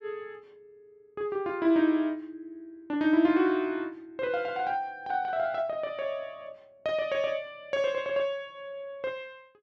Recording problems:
none

